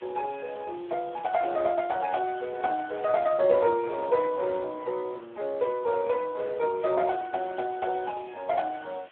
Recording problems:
telephone audio; 300 Hz to 2.2 kHz, Speex
hiss; SNR 26 dB

